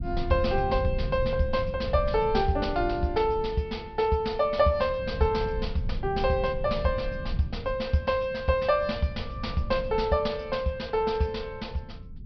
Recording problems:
treble cut off; nothing above 5.5 kHz
rumble; below 110 Hz, SNR 10 dB

